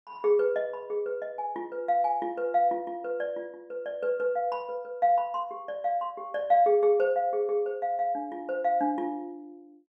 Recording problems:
none

